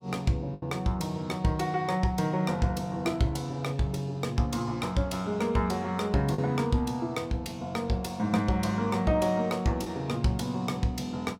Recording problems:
packet loss; 1.2% of the sound replaced, filled with the last packet

